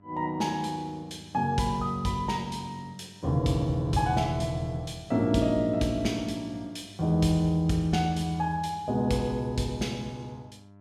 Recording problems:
hum; 50 Hz, harmonics up to 1.4 kHz, SNR 25 dB

